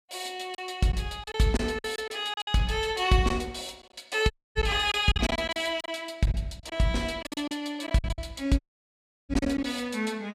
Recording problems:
packet loss; 10% of the sound replaced, filled with silence
audio cutting out; at 4.5 s and at 8.5 s for 0.5 s

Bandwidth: 15 kHz